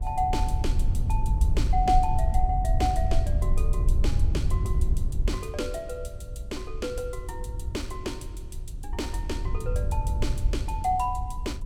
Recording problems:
wind noise; below 72 Hz, SNR -3 dB

